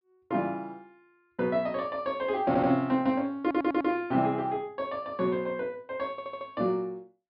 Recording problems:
treble missing; nothing above 5.5 kHz
stutter; at 2.5 s, at 3.5 s and at 6 s

